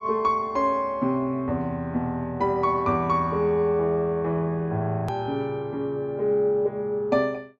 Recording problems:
treble cut off; nothing above 8 kHz
hard cut with a click; at 5 s

